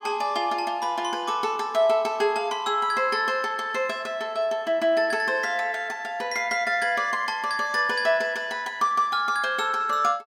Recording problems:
none

